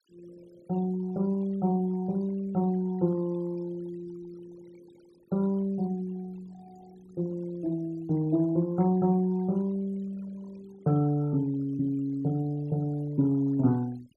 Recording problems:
denoising artefacts; signal-to-artefact ratio 26 dB

